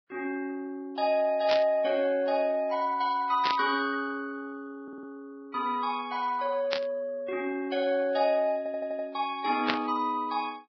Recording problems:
lossy codec; Vorbis, log-spectral distance 2 dB, nothing above 4.5 kHz
burst of static; 4 times, first at 1.5 s; peak +5 dB vs average level
audio stuttering; at 5 s and at 8.5 s

